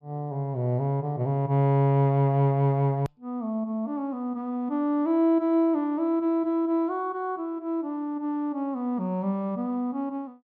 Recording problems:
edit click; at 3 s

